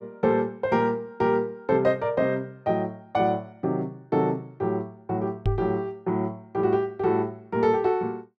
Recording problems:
microphone bump; at 5.5 s; peak +4 dB vs average level

